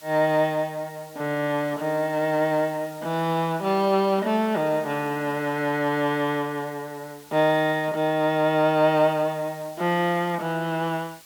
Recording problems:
background hiss; slope +1 dB per octave, SNR 23 dB

